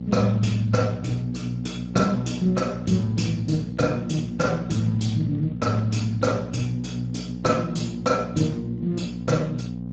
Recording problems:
lossy codec; Speex, log-spectral distance 4 dB, nothing above 7.3 kHz
hum; 60 Hz, harmonics up to 540 Hz, SNR 8 dB

